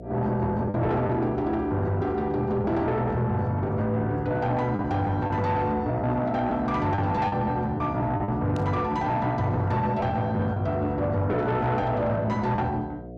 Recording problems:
distortion; soft clipping, signal-to-distortion ratio 11 dB
electrical hum; 60 Hz, harmonics up to 720 Hz, SNR 16 dB
packet loss; 4% of the sound replaced, filled with the last packet
burst of static; at 8.5 s; peak -15 dB vs average level

